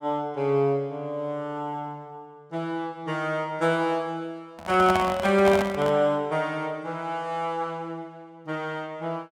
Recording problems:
microphone handling noise; from 4.5 to 6 s; peak +2 dB vs average level

